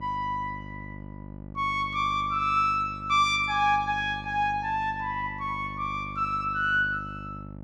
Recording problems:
hum; 50 Hz, harmonics up to 950 Hz, SNR 15 dB

